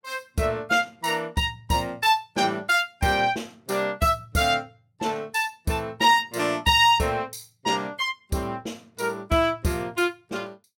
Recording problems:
none

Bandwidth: 16.5 kHz